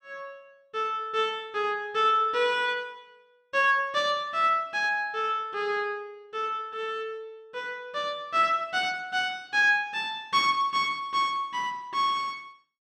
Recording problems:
none

